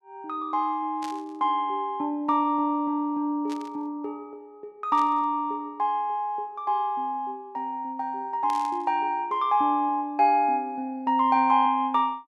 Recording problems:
burst of static; 4 times, first at 1 s; peak -11 dB vs average level

